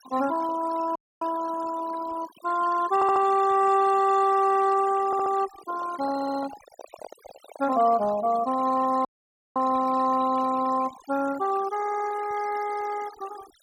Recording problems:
denoising artefacts; signal-to-artefact ratio 16 dB
audio cutting out; at 1 s and at 9 s for 0.5 s
audio stuttering; 4 times, first at 3 s
handling noise; from 5.5 to 8.5 s; peak -10 dB vs average level

